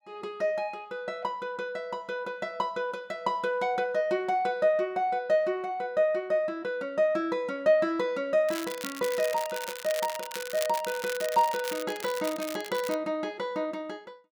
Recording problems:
crackle; from 8.5 to 13 s; loose cable, SNR 10 dB

